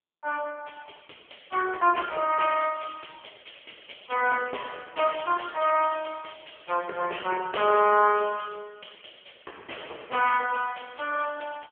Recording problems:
telephone audio; 340 Hz to 2.8 kHz, AMR-NB

